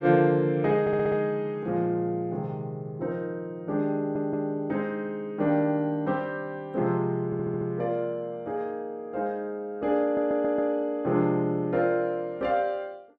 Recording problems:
stutter; 4 times, first at 1 s

